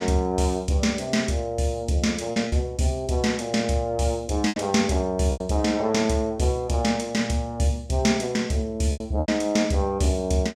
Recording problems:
packet loss; 4% of the sound replaced, filled with repeated pitch periods

